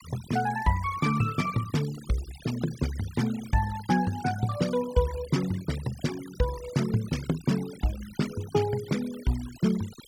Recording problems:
denoising artefacts; signal-to-artefact ratio 15 dB

